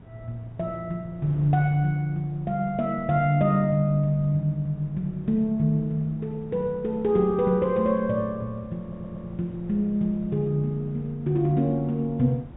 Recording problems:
treble cut off; nothing above 4 kHz
wind on the microphone; below 300 Hz, SNR 21 dB
stutter; at 9 s

